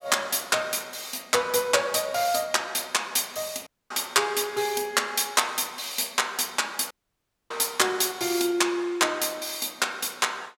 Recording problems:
dropout; at 3.5 s and at 7 s for 0.5 s

